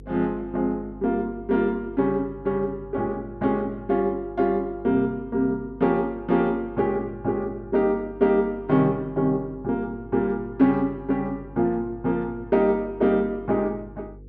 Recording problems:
electrical hum; 50 Hz, harmonics up to 500 Hz, SNR 20 dB

